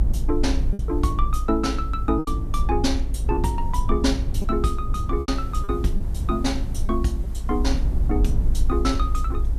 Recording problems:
background hiss; SNR 27 dB
low-frequency rumble; below 58 Hz, strongest tone 22 Hz, SNR 0 dB
lost packets; 4% of the sound replaced, filled with repeated pitch periods

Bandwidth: 14.5 kHz